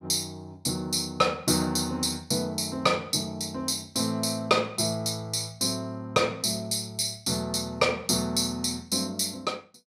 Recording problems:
none

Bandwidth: 15.5 kHz